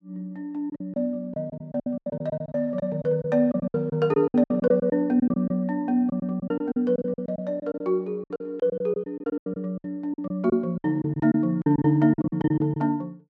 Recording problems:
packet loss; 16% of the sound replaced, filled with silence

